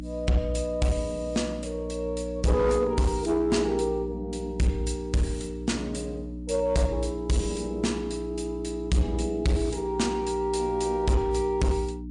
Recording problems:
lossy codec; MP3, log-spectral distance 3 dB, nothing above 10.1 kHz
distortion; hard clipping, uneven, signal-to-distortion ratio 10 dB
electrical hum; 60 Hz, harmonics up to 300 Hz, SNR 9 dB

